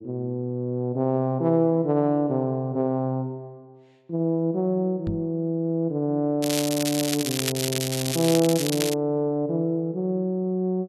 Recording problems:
microphone thump; at 5 s; peak -2 dB vs average level
crackle; from 6.5 to 9 s; loose cable, SNR 4 dB

